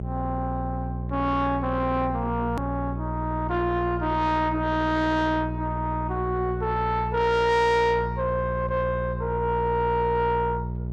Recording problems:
distortion; soft clipping, signal-to-distortion ratio 11 dB
hum; 60 Hz, harmonics up to 600 Hz, SNR 6 dB
hard cut with a click; at 2.5 s

